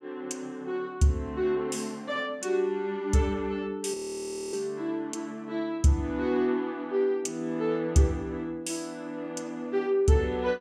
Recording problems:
audio freezing; at 4 s for 0.5 s

